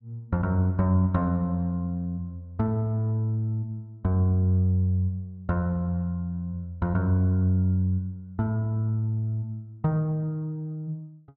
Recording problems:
none

